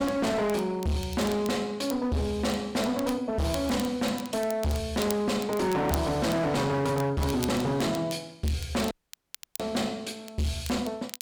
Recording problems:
distortion; hard clipping, signal-to-distortion ratio 6 dB
crackling; vinyl, SNR 16 dB
dropout; at 9 s for 0.5 s

